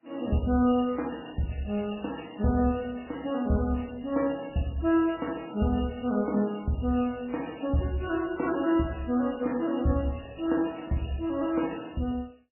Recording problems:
lossy compression; MP3, then AAC, log-spectral distance 7 dB, nothing above 2.8 kHz

